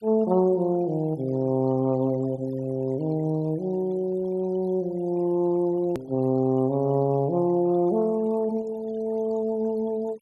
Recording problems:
noise reduction artefacts; signal-to-artefact ratio 25 dB
hard cut with a click; at 6 s

